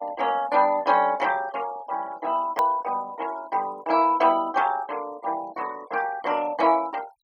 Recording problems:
denoising artefacts; signal-to-artefact ratio 21 dB
click at an edit; at 2.5 s

